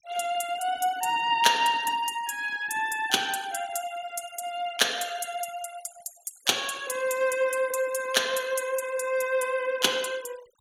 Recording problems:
noise reduction artefacts; signal-to-artefact ratio 19 dB

